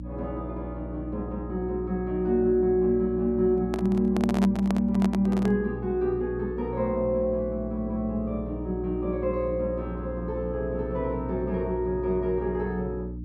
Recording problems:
hum; 60 Hz, harmonics up to 300 Hz, SNR 9 dB
microphone handling noise; from 3.5 to 5.5 s; peak 0 dB vs average level

